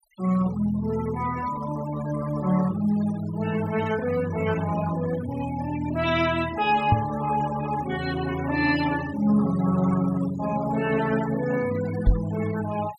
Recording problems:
denoising artefacts; signal-to-artefact ratio 15 dB
knock on the microphone; at 7 s and at 12 s; peak +8 dB vs average level

